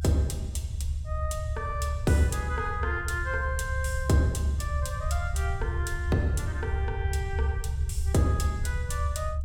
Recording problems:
rumble; below 84 Hz, strongest tone 72 Hz, SNR 0 dB

